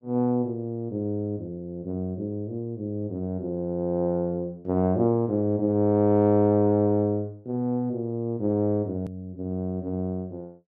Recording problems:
click at an edit; at 9 s

